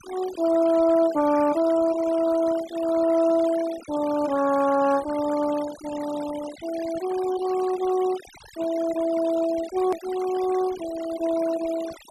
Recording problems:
denoising artefacts; signal-to-artefact ratio 17 dB
edit click; at 10 s

